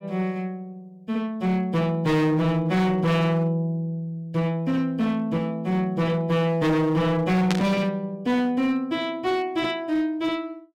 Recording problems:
distorted audio; hard clipping, signal-to-distortion ratio 7 dB
static burst; at 7.5 s; peak 0 dB vs average level

